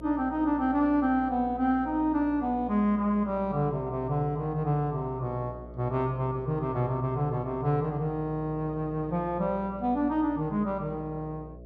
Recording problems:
hum; 60 Hz, harmonics up to 660 Hz, SNR 17 dB

